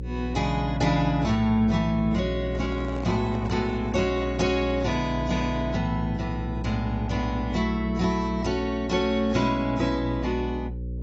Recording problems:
lossy codec; AAC, log-spectral distance 2 dB, nothing above 7.1 kHz
mains hum; 60 Hz, harmonics up to 540 Hz, SNR 8 dB
handling noise; from 2.5 to 5 s; peak -8 dB vs average level

